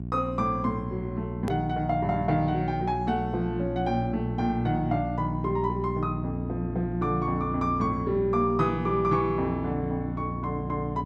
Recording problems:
hum; 60 Hz, harmonics up to 420 Hz, SNR 5 dB
hard cut with a click; at 1.5 s

